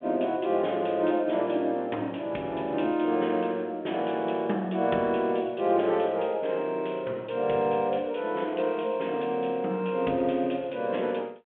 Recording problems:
phone line; 190 Hz to 3.5 kHz, G.726

